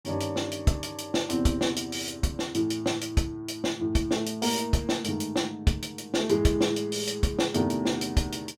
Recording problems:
none

